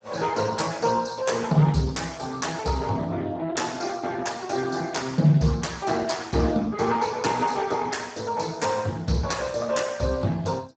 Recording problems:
codec artefacts; Speex, log-spectral distance 6 dB, nothing above 7.6 kHz

